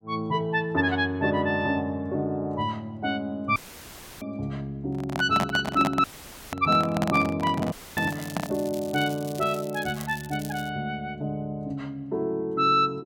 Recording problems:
audio cutting out; at 3.5 s for 0.5 s, at 6 s and at 7.5 s; filled with static
microphone handling noise; from 5 to 8.5 s; peak +3 dB vs average level
crackling; from 8 to 11 s; loose cable, SNR 17 dB

